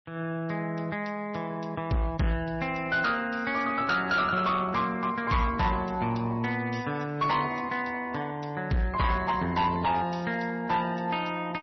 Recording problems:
codec artefacts; MP3, log-spectral distance 3 dB, nothing above 5.8 kHz
distortion; hard clipping, uneven, signal-to-distortion ratio 11 dB

